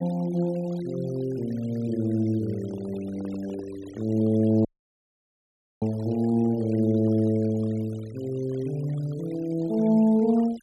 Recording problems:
denoising artefacts; signal-to-artefact ratio 24 dB
handling noise; from 2.5 to 4.5 s; peak -12 dB vs average level
audio cutting out; at 4.5 s for 1 s

